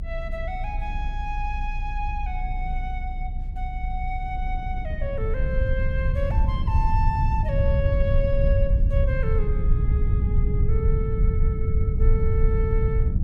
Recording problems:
low-frequency rumble; below 84 Hz, SNR -6 dB
wind on the microphone; below 250 Hz, SNR 14 dB

